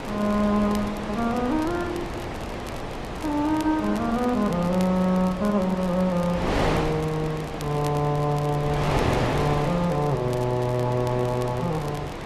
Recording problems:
codec artefacts; AAC, log-spectral distance 2 dB
wind on the microphone; below 1.1 kHz, SNR 6 dB
crackling; vinyl, SNR 21 dB

